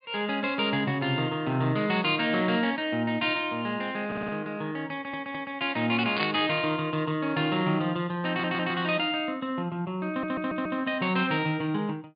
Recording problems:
treble missing; nothing above 4.8 kHz
stutter; 4 times, first at 4 s
burst of static; at 6 s; peak 0 dB vs average level

